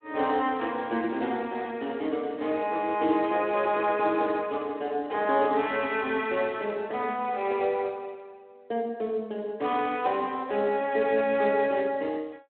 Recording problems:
phone line; 240 Hz to 3.5 kHz, Speex

